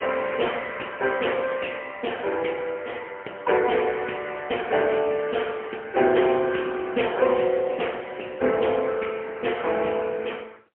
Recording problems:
telephone audio; 300 Hz to 3.3 kHz, AMR-NB, then MP3

